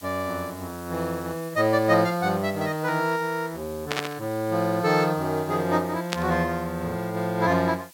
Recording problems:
hiss; slope +4 dB per octave, SNR 20 dB
burst of static; at 4 s and at 6 s; peak +2 dB vs average level

